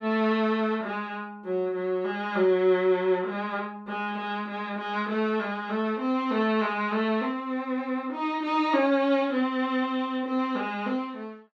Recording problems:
none

